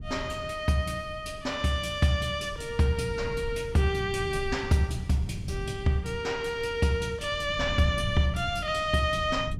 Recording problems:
wind on the microphone; below 130 Hz, SNR 12 dB

